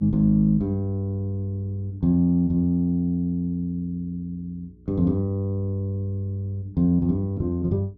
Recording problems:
electrical hum; 60 Hz, harmonics up to 420 Hz, SNR 27 dB

